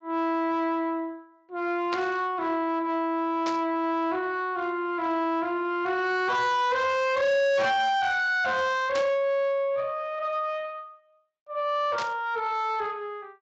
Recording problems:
lossy compression; Speex, log-spectral distance 2 dB, nothing above 7.3 kHz
distorted audio; soft clipping, signal-to-distortion ratio 8 dB
static burst; 4 times, first at 2 s; peak -4 dB vs average level

